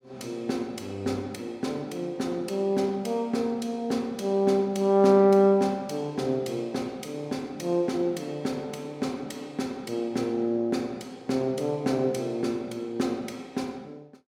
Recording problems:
none

